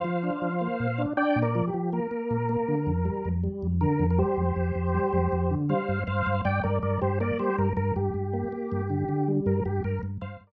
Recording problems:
none

